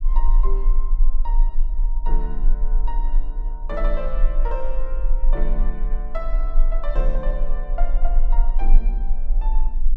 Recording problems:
low-frequency rumble; below 32 Hz, strongest tone 22 Hz, SNR -10 dB

